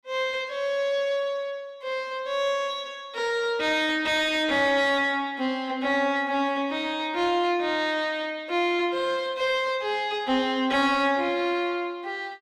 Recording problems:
distorted audio; soft clipping, signal-to-distortion ratio 12 dB

